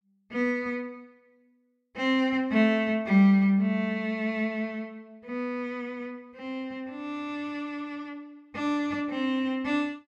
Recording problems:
none

